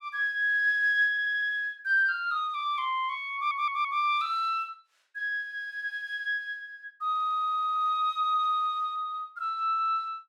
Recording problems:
stutter; at 1 s, at 3.5 s and at 7 s

